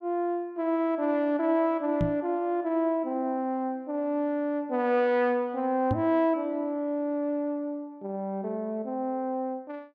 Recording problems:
microphone thump; at 2 s and at 6 s; peak +3 dB vs average level

